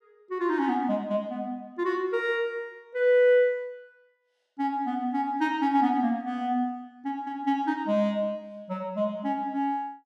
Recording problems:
none

